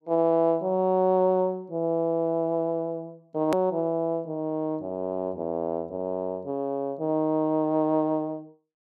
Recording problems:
hard cut with a click; at 3.5 s

